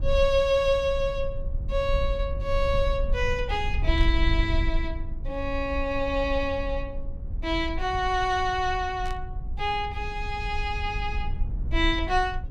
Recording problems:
low-frequency rumble; below 62 Hz, SNR 5 dB
burst of static; at 4 s and at 9 s; peak -14 dB vs average level

